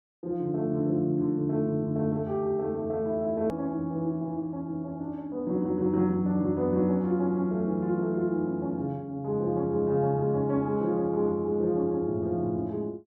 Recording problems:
hard cut with a click; at 3.5 s

